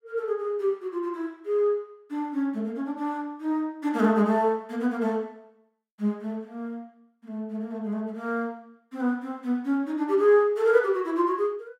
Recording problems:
none

